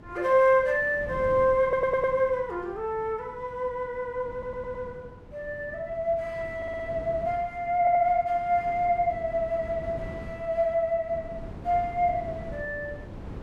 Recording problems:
wind on the microphone; below 330 Hz, SNR 17 dB
stutter; 4 times, first at 1.5 s

